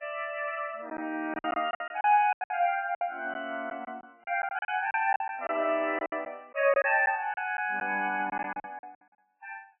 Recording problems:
codec artefacts; MP3, then MP3, log-spectral distance 2 dB, nothing above 2.5 kHz
lost packets; 12% of the sound replaced, filled with silence

